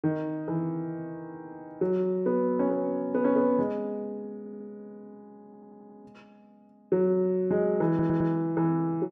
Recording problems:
audio stuttering; at 4.5 s, at 5.5 s and at 8 s

